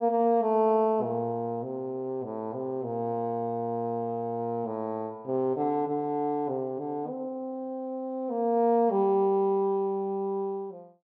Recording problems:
none

